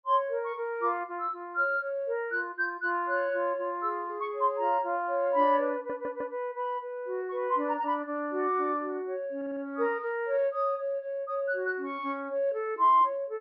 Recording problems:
treble missing; nothing above 5.5 kHz
stutter; at 5.5 s and at 9.5 s

